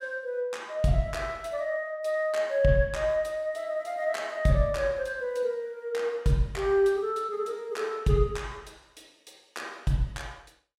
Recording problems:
none

